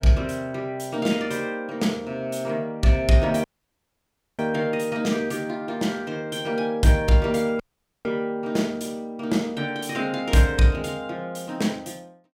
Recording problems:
dropout; at 3.5 s for 1 s and at 7.5 s

